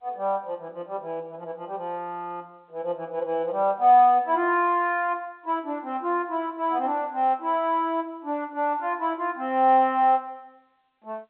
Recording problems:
phone line; 280 Hz to 3.6 kHz, G.711

